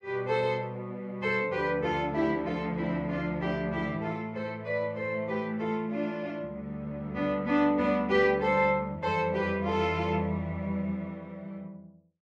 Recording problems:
none

